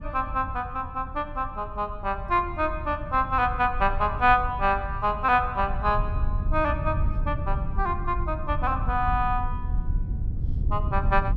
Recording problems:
low-frequency rumble; below 84 Hz, SNR 6 dB

